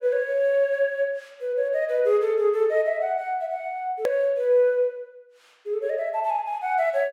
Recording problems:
click at an edit; at 4 s

